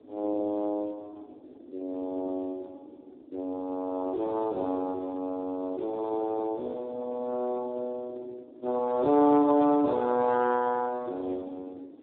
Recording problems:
phone line; 220 Hz to 2.2 kHz, Speex
wind noise; below 390 Hz, SNR 21 dB

